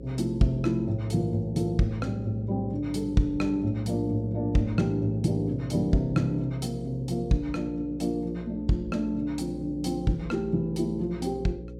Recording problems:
hum; 60 Hz, harmonics up to 540 Hz, SNR 13 dB

